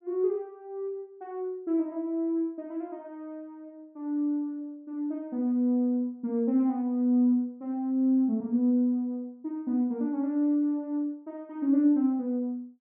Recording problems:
low-pass filter; nothing above 3.6 kHz

